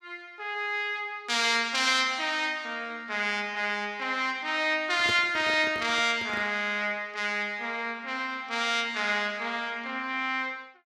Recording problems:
microphone handling noise; from 5 to 6.5 s; peak -5 dB vs average level

